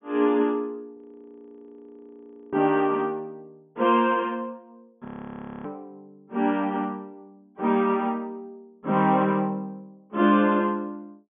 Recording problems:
treble cut off; nothing above 3.5 kHz
frozen audio; at 1 s for 1.5 s and at 5 s for 0.5 s

